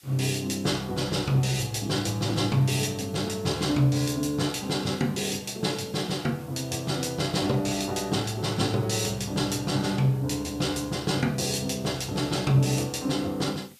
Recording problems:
hiss; slope +3 dB per octave, SNR 25 dB

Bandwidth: 14.5 kHz